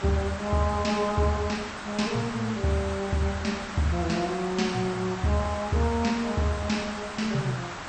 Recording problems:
lossy codec; MP2, log-spectral distance 5 dB, nothing above 8 kHz
hiss; SNR 8 dB

